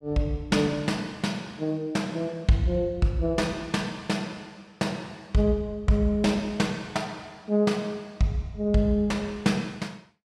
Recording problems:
none

